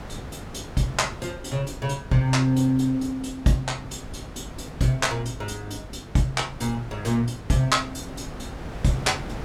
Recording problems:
electrical hum; 50 Hz, harmonics up to 450 Hz, SNR 21 dB
wind on the microphone; below 700 Hz, SNR 15 dB

